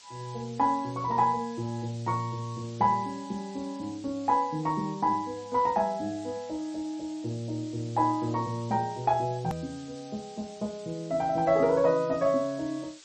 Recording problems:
lossy codec; MP3, log-spectral distance 7 dB
background hiss; slope +3 dB per octave, SNR 21 dB
edit click; at 9.5 s

